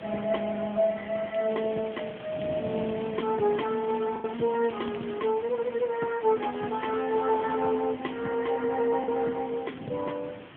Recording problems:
telephone audio; 190 Hz to 3.3 kHz, AMR-NB
hiss; SNR 18 dB
wind noise; below 340 Hz, SNR 16 dB
packet loss; 1.2% of the sound replaced, filled with the last packet
crackling; from 1.5 to 5 s and from 6.5 to 7.5 s; loose cable, SNR 21 dB

